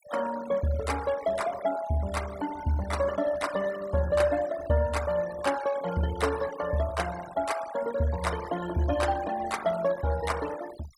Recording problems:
denoising artefacts; signal-to-artefact ratio 14 dB

